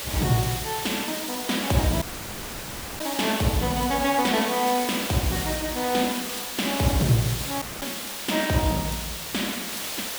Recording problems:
background hiss; slope 0 dB per octave, SNR 5 dB
dropout; at 2 s for 1 s and at 7.5 s

